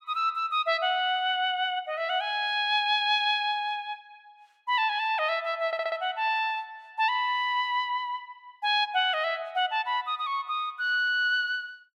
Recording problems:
audio stuttering; at 5.5 s

